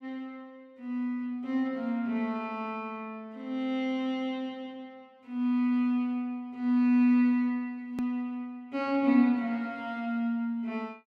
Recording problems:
hard cut with a click; at 8 s

